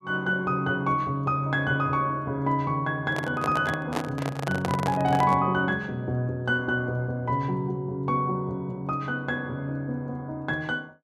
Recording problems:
handling noise; from 3 to 5.5 s; peak +1 dB vs average level

